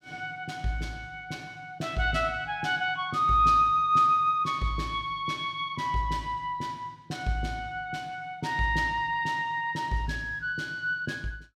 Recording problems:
none

